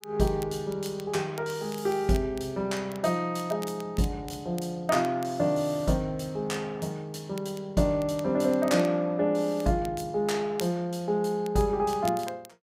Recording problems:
crackle; vinyl, SNR 20 dB

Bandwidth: 15.5 kHz